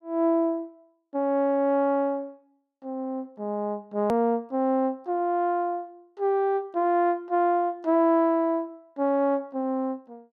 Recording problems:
edit click; at 4 s

